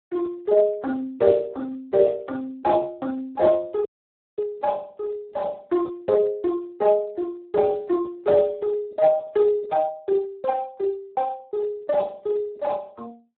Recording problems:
telephone audio; 280 Hz to 2.5 kHz, Speex
audio cutting out; at 4 s for 0.5 s

